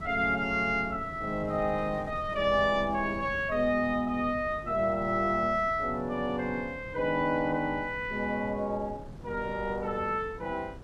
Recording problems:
wind noise; below 270 Hz, SNR 16 dB

